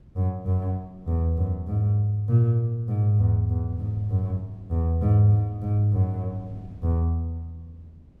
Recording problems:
wind on the microphone; below 190 Hz, SNR 25 dB

